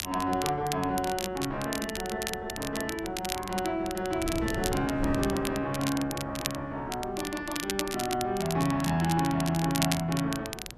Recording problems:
wind on the microphone; below 320 Hz, SNR 13 dB
crackle; vinyl, SNR 7 dB

